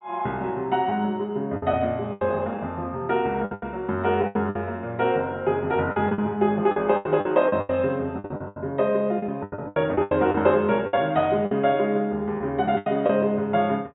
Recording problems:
treble cut off; nothing above 4 kHz
lost packets; 12% of the sound replaced, filled with the last packet

